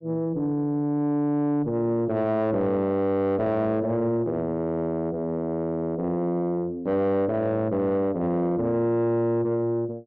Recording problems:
distorted audio; soft clipping, signal-to-distortion ratio 7 dB

